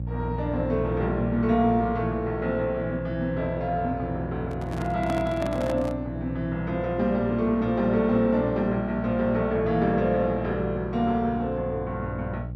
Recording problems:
hum; 60 Hz, harmonics up to 540 Hz, SNR 9 dB
handling noise; from 4.5 to 6 s; peak -3 dB vs average level

